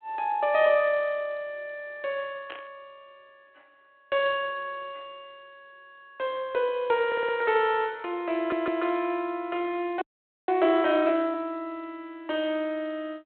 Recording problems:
telephone audio; 240 Hz to 3.4 kHz, G.726
static burst; at 2.5 s; peak -9 dB vs average level
stutter; at 7 s and at 8.5 s
audio freezing; at 10 s

